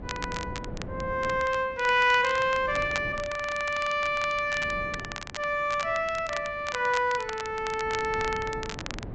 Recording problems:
low-pass filter; nothing above 8 kHz
wind on the microphone; below 350 Hz, SNR 16 dB
crackle; vinyl, SNR 13 dB

